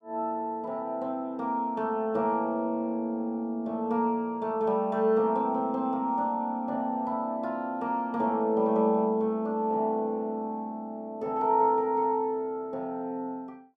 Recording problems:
none

